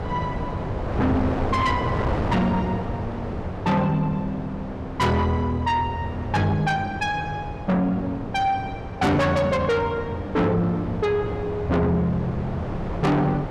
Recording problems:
distortion; soft clipping, signal-to-distortion ratio 6 dB
wind on the microphone; below 650 Hz, SNR 7 dB

